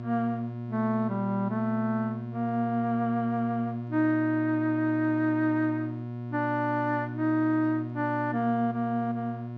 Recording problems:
electrical hum; 60 Hz, harmonics up to 1.1 kHz, SNR 8 dB

